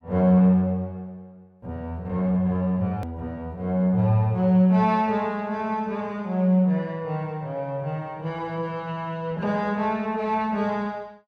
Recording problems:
hard cut with a click; at 3 s

